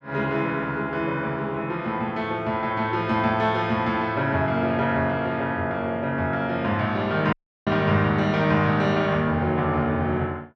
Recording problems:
audio cutting out; at 7.5 s

